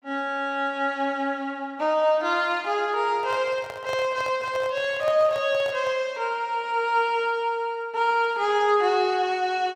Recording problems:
microphone handling noise; from 3 to 6 s; peak -6 dB vs average level

